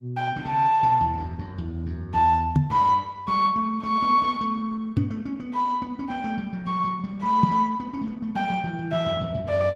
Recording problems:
lossy codec; Opus, log-spectral distance 2 dB
microphone thump; at 2.5 s, at 5 s and at 7.5 s; peak +8 dB vs average level

